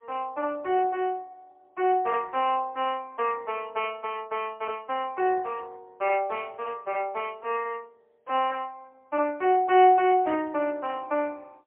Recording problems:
telephone audio; 280 Hz to 3.1 kHz, AMR-NB, then MP3

